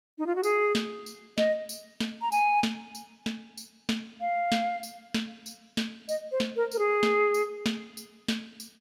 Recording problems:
none

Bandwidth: 16.5 kHz